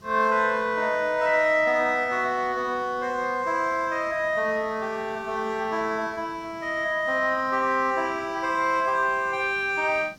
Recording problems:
background hiss; SNR 26 dB

